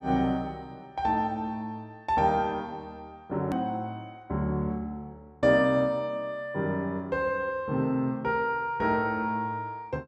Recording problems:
hard cut with a click; at 3.5 s

